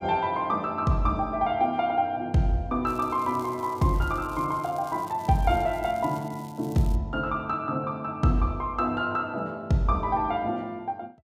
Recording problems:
crackling; from 3 to 7 s; loose cable, SNR 24 dB

